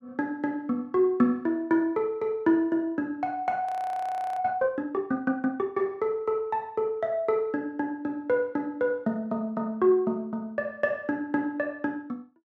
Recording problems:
frozen audio; at 3.5 s for 0.5 s

